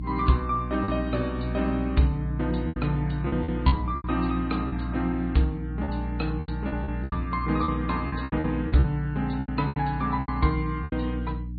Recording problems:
treble missing; nothing above 4.4 kHz
lossy codec; MP3, log-spectral distance 2 dB
hum; 60 Hz, harmonics up to 300 Hz, SNR 5 dB
packet loss; 11% of the sound replaced, filled with repeated pitch periods

